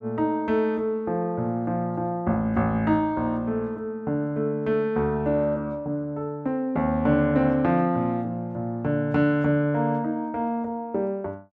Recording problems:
none

